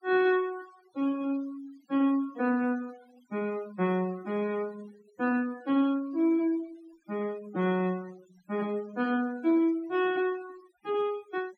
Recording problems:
denoising artefacts; signal-to-artefact ratio 23 dB

